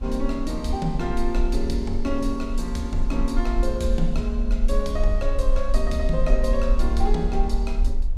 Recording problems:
rumble; below 44 Hz, strongest tone 24 Hz, SNR 0 dB
wind on the microphone; below 360 Hz, SNR 20 dB

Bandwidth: 15 kHz